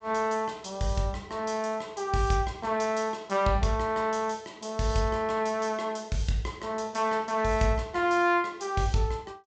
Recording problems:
low-pass filter; nothing above 8 kHz

